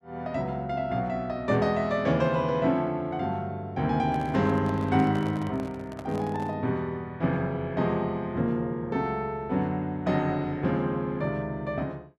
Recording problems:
microphone handling noise; from 4 to 6.5 s; peak -9 dB vs average level

